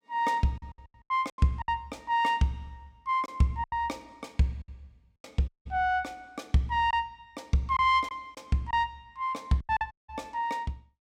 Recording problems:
lost packets; 8% of the sound replaced, filled with silence
dropout; at 5.5 s and at 10 s

